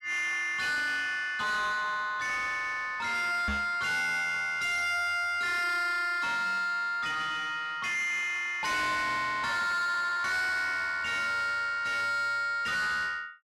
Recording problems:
distortion; soft clipping, signal-to-distortion ratio 7 dB
microphone bump; at 3.5 s; peak +2 dB vs average level

